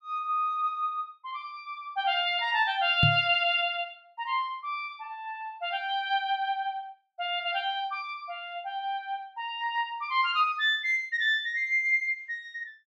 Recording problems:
knock on the microphone; at 3 s; peak +6 dB vs average level

